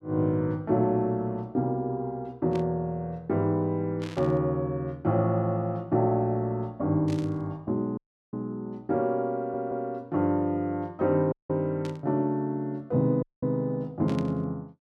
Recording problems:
burst of static; 5 times, first at 2.5 s; peak -10 dB vs average level
dropout; at 8 s, at 11 s and at 13 s
stutter; at 9.5 s

